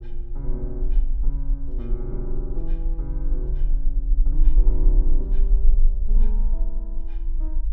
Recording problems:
low-frequency rumble; below 38 Hz, strongest tone 20 Hz, SNR -13 dB

